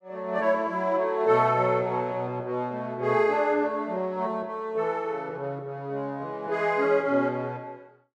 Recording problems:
none

